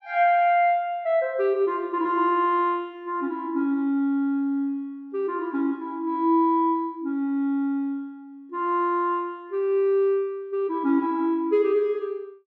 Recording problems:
none

